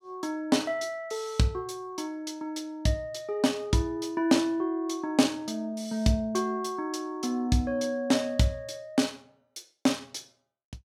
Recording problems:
none

